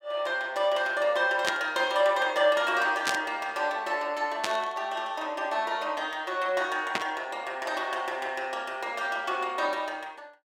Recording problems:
static burst; 4 times, first at 1.5 s; peak +4 dB vs average level

